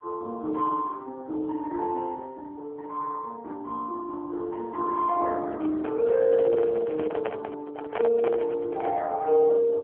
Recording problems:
phone line; 260 Hz to 2.1 kHz, AMR-NB
microphone handling noise; from 5.5 to 9 s; peak -2 dB vs average level

